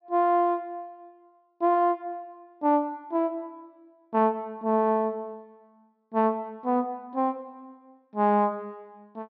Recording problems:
low-pass filter; nothing above 5.7 kHz

